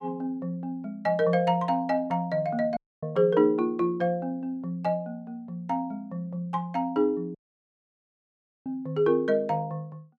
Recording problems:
dropout; at 3 s and at 7.5 s for 1.5 s

